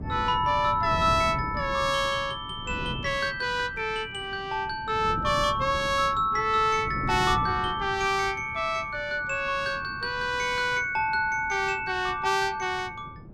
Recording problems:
wind noise; below 260 Hz, SNR 13 dB

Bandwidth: 16.5 kHz